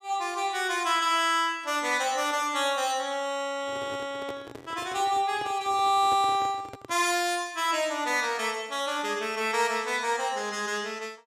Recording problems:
handling noise; from 3.5 to 7 s; peak -8 dB vs average level

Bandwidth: 15 kHz